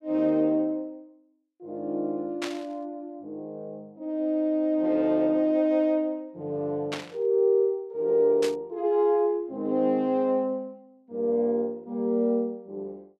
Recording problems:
burst of static; at 2.5 s, at 7 s and at 8.5 s; peak -3 dB vs average level

